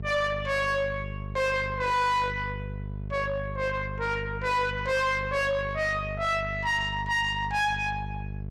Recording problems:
distorted audio; soft clipping, signal-to-distortion ratio 7 dB
electrical hum; 50 Hz, harmonics up to 650 Hz, SNR 9 dB

